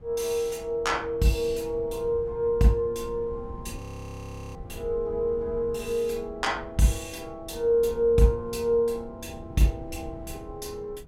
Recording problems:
wind noise; below 150 Hz, SNR 17 dB
audio freezing; at 4 s for 1 s

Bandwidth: 16.5 kHz